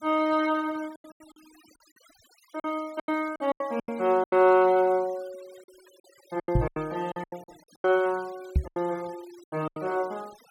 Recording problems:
noise reduction artefacts; signal-to-artefact ratio 26 dB
lost packets; 14% of the sound replaced, filled with silence
microphone bump; at 6.5 s and at 8.5 s; peak +6 dB vs average level

